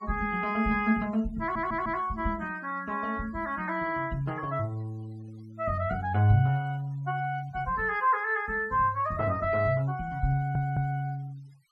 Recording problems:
denoising artefacts; signal-to-artefact ratio 28 dB
audio stuttering; at 1.5 s and at 10 s

